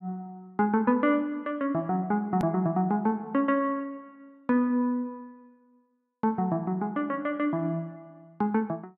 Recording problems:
edit click; at 2.5 s

